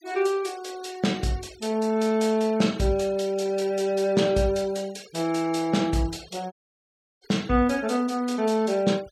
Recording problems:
denoising artefacts; signal-to-artefact ratio 23 dB
dropout; at 6.5 s for 0.5 s

